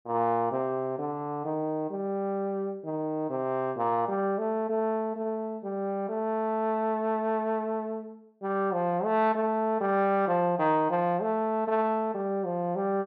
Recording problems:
none

